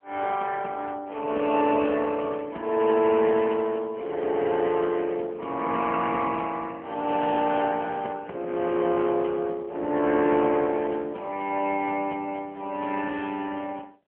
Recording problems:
phone line; 240 Hz to 3.2 kHz, AMR-NB

